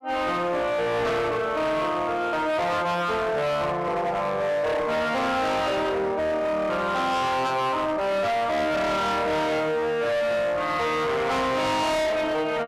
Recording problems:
distorted audio; hard clipping, signal-to-distortion ratio 7 dB

